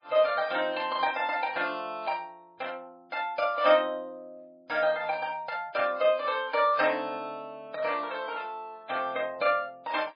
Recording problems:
lossy codec; MP3, log-spectral distance 3 dB, nothing above 4.2 kHz

